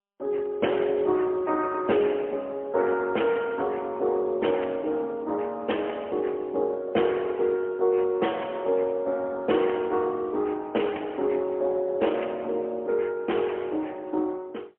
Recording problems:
phone line; 280 Hz to 3.2 kHz, AMR-NB, then MP3

